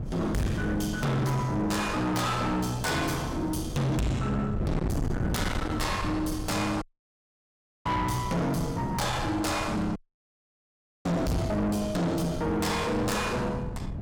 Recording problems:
distortion; soft clipping, signal-to-distortion ratio 6 dB
wind on the microphone; below 270 Hz, SNR 8 dB
dropout; at 7 s for 1 s and at 10 s for 1 s

